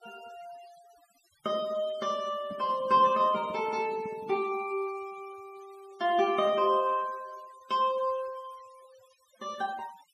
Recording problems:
noise reduction artefacts; signal-to-artefact ratio 24 dB
microphone handling noise; from 2.5 to 4.5 s; peak -10 dB vs average level

